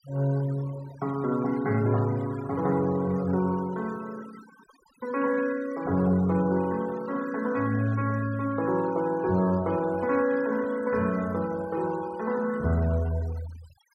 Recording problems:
noise reduction artefacts; signal-to-artefact ratio 19 dB

